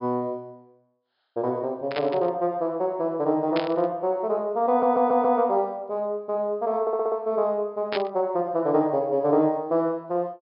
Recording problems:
treble missing; nothing above 5.5 kHz
static burst; at 2 s, at 3.5 s and at 8 s; peak -2 dB vs average level
audio stuttering; at 4.5 s and at 7 s

